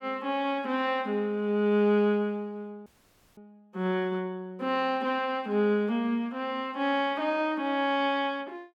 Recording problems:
audio cutting out; at 3 s for 0.5 s

